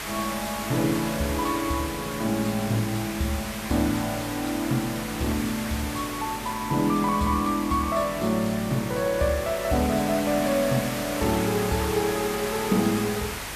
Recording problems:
hum; 50 Hz, harmonics up to 350 Hz, SNR 20 dB
hiss; slope -2 dB per octave, SNR 7 dB

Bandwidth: 14.5 kHz